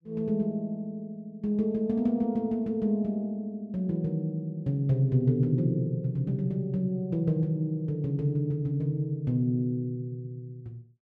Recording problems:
none

